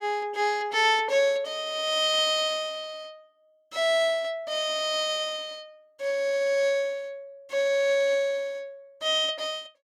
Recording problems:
none

